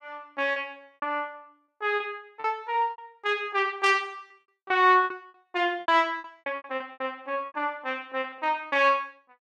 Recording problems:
lost packets; 13% of the sound replaced, filled with repeated pitch periods

